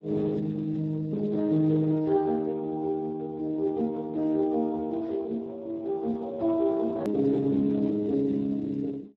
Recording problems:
lossy compression; Speex, log-spectral distance 2 dB, nothing above 13.1 kHz
click at an edit; at 7 s

